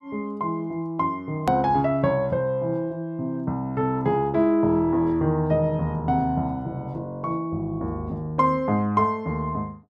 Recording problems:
click at an edit; at 1.5 s

